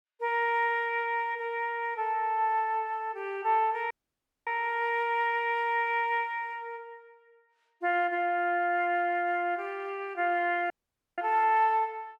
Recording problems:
audio cutting out; at 4 s for 0.5 s and at 11 s

